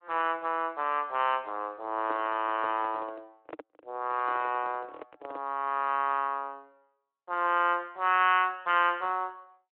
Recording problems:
phone line; 280 Hz to 3.1 kHz, Speex
handling noise; from 2 to 5.5 s; peak -7 dB vs average level

